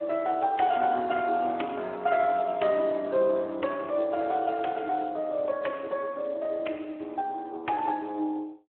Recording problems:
telephone audio; 280 Hz to 3.1 kHz, Speex

